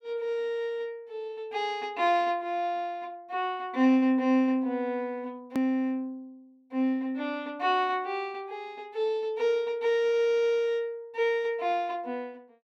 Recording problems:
click at an edit; at 5.5 s

